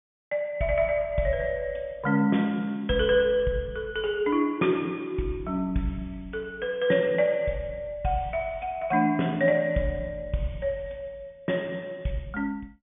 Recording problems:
low-pass filter; nothing above 3.6 kHz

